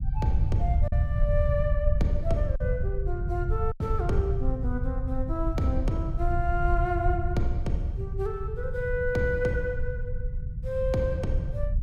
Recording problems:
low-frequency rumble; below 88 Hz, SNR -1 dB
lost packets; 1.4% of the sound replaced, filled with silence

